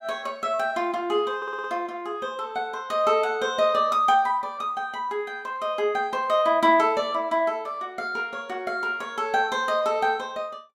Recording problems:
audio stuttering; at 1.5 s

